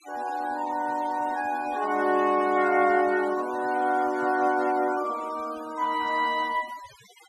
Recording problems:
noise reduction artefacts; signal-to-artefact ratio 19 dB

